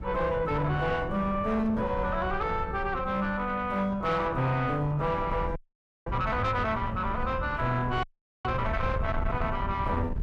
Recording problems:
distortion; soft clipping, signal-to-distortion ratio 11 dB
wind noise; below 130 Hz, SNR 9 dB
frozen audio; at 5.5 s for 0.5 s and at 8 s

